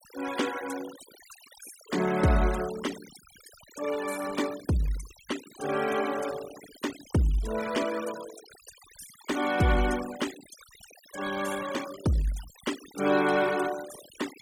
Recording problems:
noise reduction artefacts; signal-to-artefact ratio 13 dB

